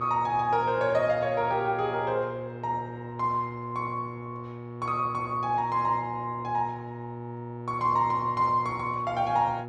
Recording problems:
electrical hum; 60 Hz, harmonics up to 1.4 kHz, SNR 11 dB

